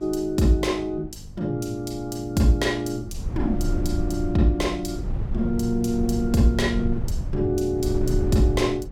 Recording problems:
hum; 50 Hz, harmonics up to 750 Hz, SNR 22 dB
wind noise; below 100 Hz, SNR 6 dB

